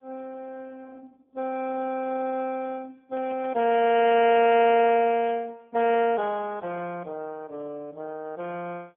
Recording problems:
phone line; 190 Hz to 3.3 kHz, AMR-NB
crackle; from 3 to 4 s; loose cable, SNR 29 dB

